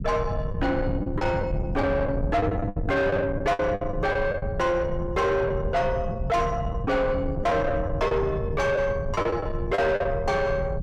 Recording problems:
distorted audio; soft clipping, signal-to-distortion ratio 7 dB
rumble; below 180 Hz, SNR 6 dB
lost packets; 8% of the sound replaced, filled with the last packet

